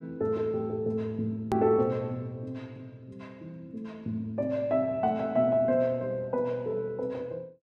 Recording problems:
hard cut with a click; at 1.5 s

